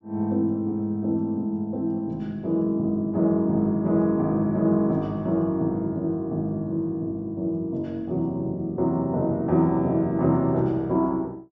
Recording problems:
low-pass filter; nothing above 8 kHz

